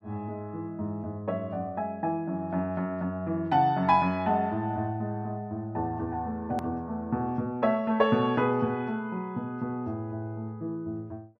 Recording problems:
edit click; at 6.5 s

